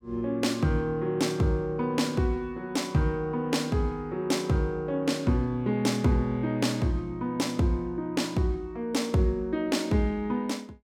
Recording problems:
none

